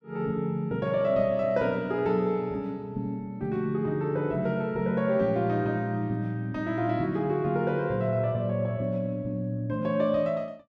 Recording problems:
none

